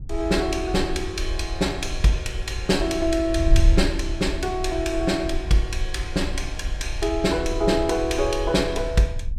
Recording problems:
wind on the microphone; below 62 Hz, SNR 6 dB

